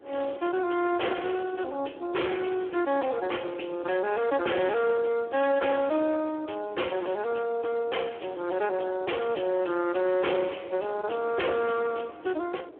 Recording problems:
phone line; 260 Hz to 3.4 kHz, Speex
distorted audio; hard clipping, signal-to-distortion ratio 7 dB
wind noise; below 570 Hz, SNR 20 dB

